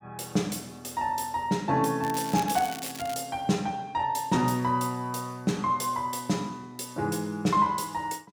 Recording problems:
crackling; from 2 to 3 s; loose cable, SNR 12 dB

